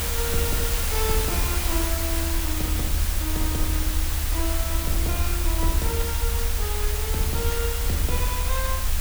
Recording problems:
hiss; slope -1 dB per octave, SNR -4 dB
rumble; below 74 Hz, SNR -3 dB

